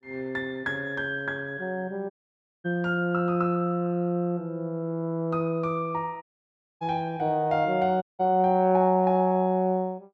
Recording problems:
dropout; at 2 s for 0.5 s, at 6 s for 0.5 s and at 8 s

